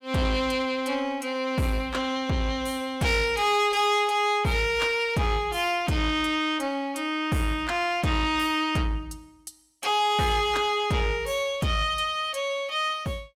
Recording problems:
distorted audio; soft clipping, signal-to-distortion ratio 12 dB

